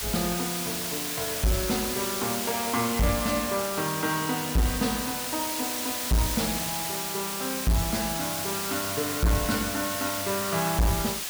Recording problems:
distorted audio; hard clipping, signal-to-distortion ratio 11 dB
hiss; slope +1 dB per octave, SNR 1 dB

